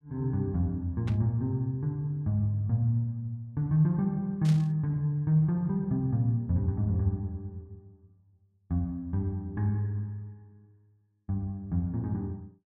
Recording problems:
burst of static; at 1 s and at 4.5 s; peak -9 dB vs average level

